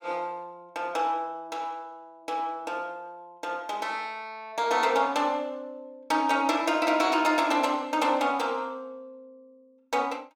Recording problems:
none

